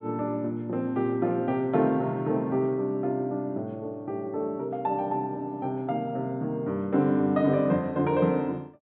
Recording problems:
treble missing; nothing above 4 kHz

